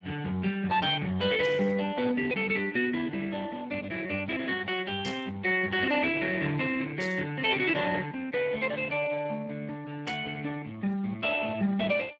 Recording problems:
lossy compression; Speex, log-spectral distance 4 dB
static burst; 4 times, first at 1.5 s; peak -7 dB vs average level

